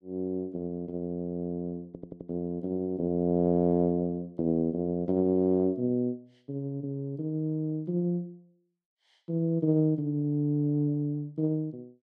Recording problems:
stutter; at 2 s

